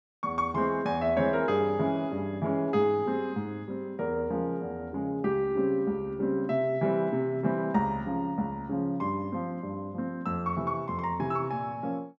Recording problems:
none

